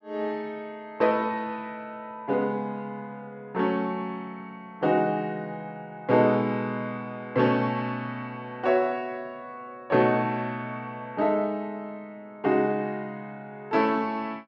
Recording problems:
none

